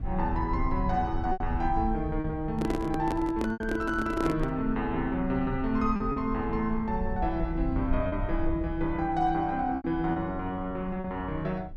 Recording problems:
low-frequency rumble; below 76 Hz, SNR 8 dB
lost packets; 4% of the sound replaced, filled with repeated pitch periods
handling noise; from 2.5 to 4.5 s; peak +2 dB vs average level

